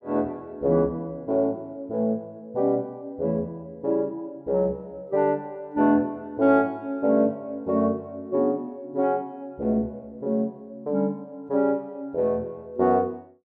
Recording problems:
none

